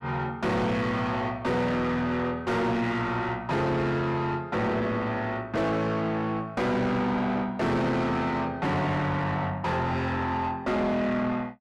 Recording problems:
distorted audio; soft clipping, signal-to-distortion ratio 6 dB

